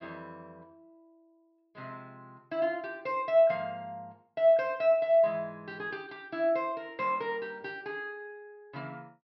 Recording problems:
treble missing; nothing above 5.5 kHz

